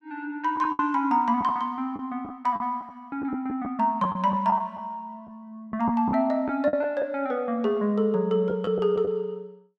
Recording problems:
packet loss; 6% of the sound replaced, filled with the last packet

